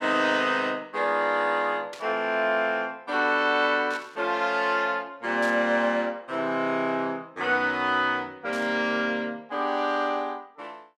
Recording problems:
burst of static; 4 times, first at 2 s; peak -10 dB vs average level

